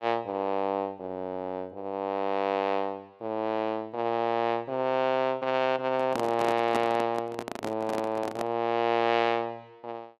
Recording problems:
handling noise; from 6 to 8.5 s; peak +1 dB vs average level

